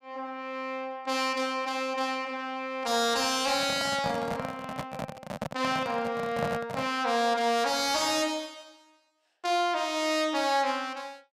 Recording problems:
distorted audio; soft clipping, signal-to-distortion ratio 12 dB
handling noise; from 3.5 to 7 s; peak +1 dB vs average level

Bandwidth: 15.5 kHz